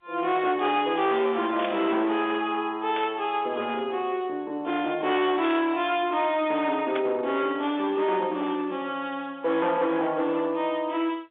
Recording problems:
phone line; 280 Hz to 3.6 kHz, G.711
distorted audio; hard clipping, signal-to-distortion ratio 12 dB
burst of static; 4 times, first at 1.5 s; peak -3 dB vs average level

